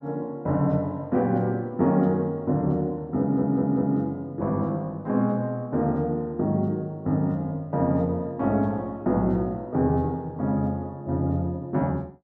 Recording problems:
stutter; at 3 s

